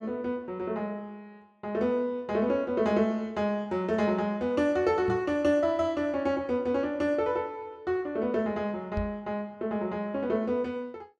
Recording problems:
microphone thump; at 5 s and at 9 s; peak -1 dB vs average level

